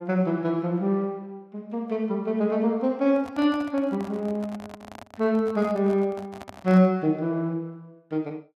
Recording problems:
handling noise; from 3 to 7 s; peak -11 dB vs average level

